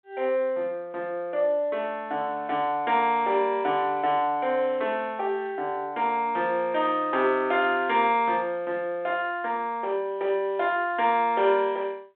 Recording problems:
phone line; 300 Hz to 3.6 kHz, G.726

